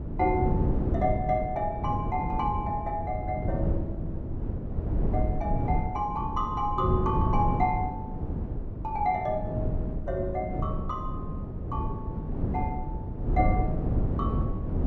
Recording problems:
wind noise; below 200 Hz, SNR 0 dB

